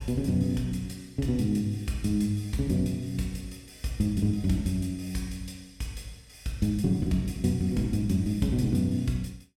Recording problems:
none

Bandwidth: 16 kHz